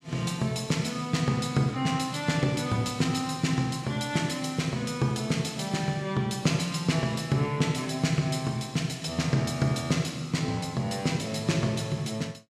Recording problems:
none

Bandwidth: 14 kHz